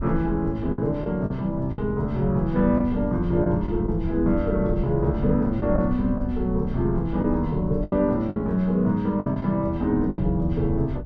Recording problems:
wind on the microphone; below 80 Hz, SNR 10 dB
packet loss; 6% of the sound replaced, filled with the last packet

